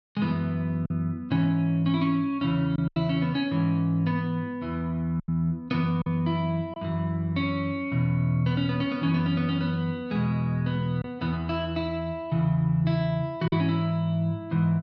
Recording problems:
packet loss; 2% of the sound replaced, filled with silence

